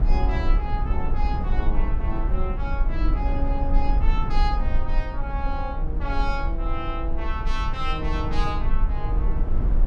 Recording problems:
rumble; below 50 Hz, strongest tone 20 Hz, SNR -5 dB

